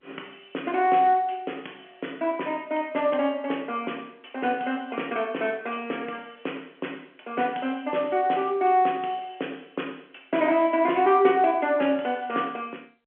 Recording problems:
phone line; 220 Hz to 3.3 kHz, G.711

